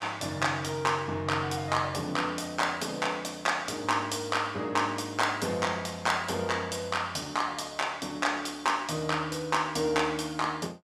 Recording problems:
none

